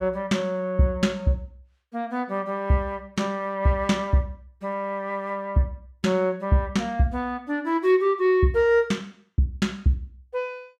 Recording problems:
none

